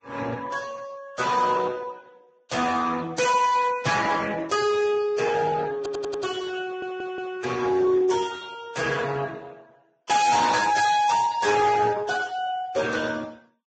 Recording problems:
lossy codec; Speex, then Vorbis, log-spectral distance 5 dB, nothing above 7.6 kHz
distortion; hard clipping, signal-to-distortion ratio 6 dB
stutter; at 6 s and at 6.5 s

